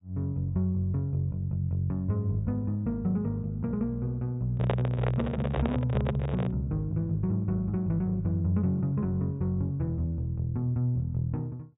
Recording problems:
low-pass filter; nothing above 4 kHz
microphone handling noise; from 4.5 to 6.5 s; peak +4 dB vs average level

